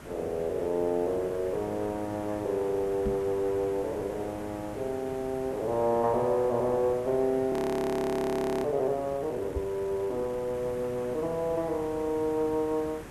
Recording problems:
background hiss; SNR 14 dB
microphone thump; at 3 s and at 9.5 s; peak -1 dB vs average level
audio freezing; at 7.5 s for 1 s

